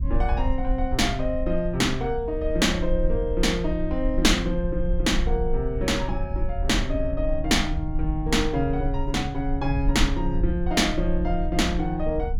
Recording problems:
low-frequency rumble; below 56 Hz, SNR 5 dB

